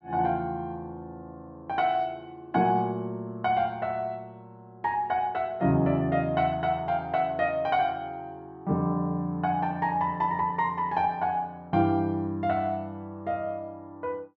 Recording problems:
none

